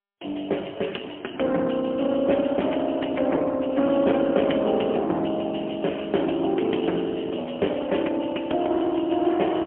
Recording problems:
telephone audio; 220 Hz to 3.3 kHz, AMR-NB, then MP3

